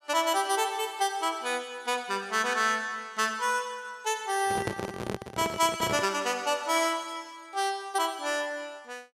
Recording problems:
handling noise; from 4.5 to 6 s; peak +1 dB vs average level

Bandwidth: 14 kHz